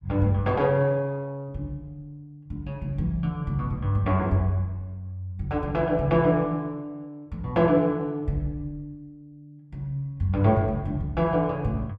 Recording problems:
none

